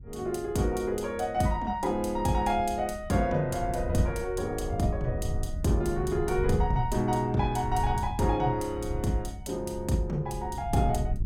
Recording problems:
wind noise; below 96 Hz, SNR 9 dB

